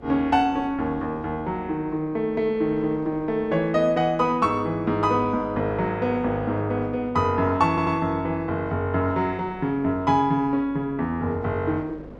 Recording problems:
hum; 50 Hz, harmonics up to 550 Hz, SNR 23 dB
wind noise; below 590 Hz, SNR 21 dB
audio stuttering; at 7.5 s

